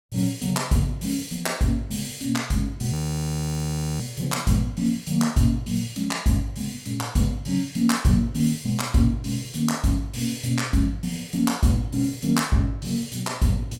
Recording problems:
audio freezing; at 3 s for 1 s

